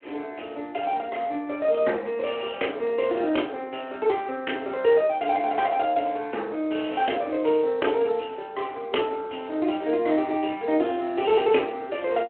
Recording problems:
telephone audio; 240 Hz to 3.2 kHz, Speex

